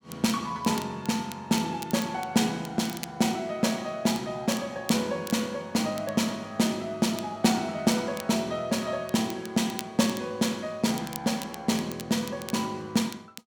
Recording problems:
crackling; vinyl, SNR 16 dB

